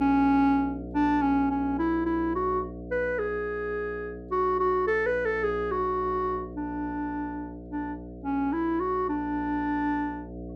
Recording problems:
mains hum; 60 Hz, harmonics up to 720 Hz, SNR 13 dB

